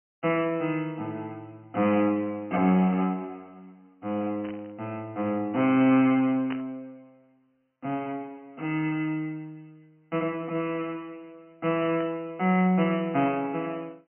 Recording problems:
phone line; 220 Hz to 3.1 kHz, G.726
static burst; at 4.5 s, at 6.5 s and at 12 s; peak -8 dB vs average level

